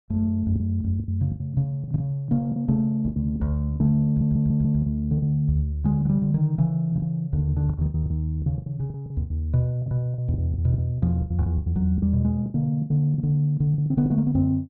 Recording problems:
packet loss; 13% of the sound replaced, filled with the last packet
stutter; at 4 s

